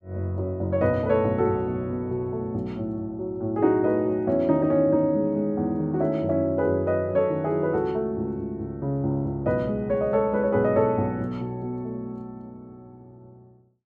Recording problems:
none

